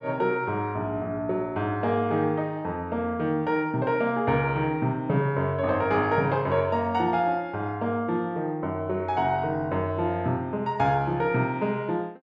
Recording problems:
none

